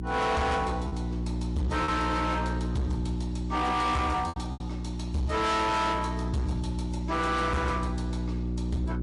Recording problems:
codec artefacts; MP3, log-spectral distance 2 dB, nothing above 11 kHz
distortion; hard clipping, uneven, signal-to-distortion ratio 7 dB
mains hum; 60 Hz, harmonics up to 1.3 kHz, SNR 4 dB
lost packets; 3% of the sound replaced, filled with repeated pitch periods

